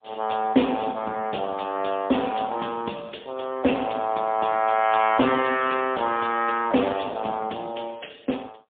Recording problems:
telephone audio; 190 Hz to 3.4 kHz, AMR-NB, then MP3

